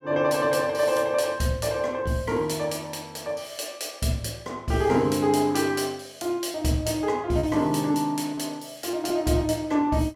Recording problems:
lost packets; 1.5% of the sound replaced, filled with repeated pitch periods

